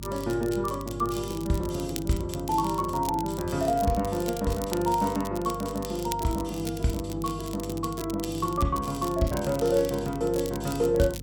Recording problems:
hum; 50 Hz, harmonics up to 300 Hz, SNR 12 dB
crackle; vinyl, SNR 14 dB

